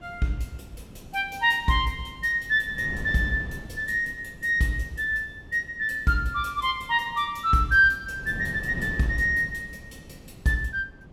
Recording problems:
wind noise; below 250 Hz, SNR 17 dB

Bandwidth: 16.5 kHz